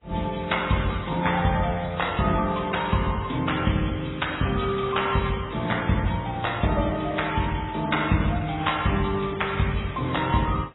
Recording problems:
codec artefacts; MP3, then AAC, log-spectral distance 9 dB, nothing above 3.8 kHz

